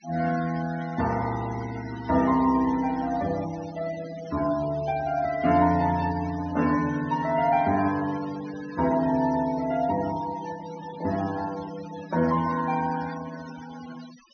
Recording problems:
treble missing; nothing above 6.3 kHz
denoising artefacts; signal-to-artefact ratio 16 dB

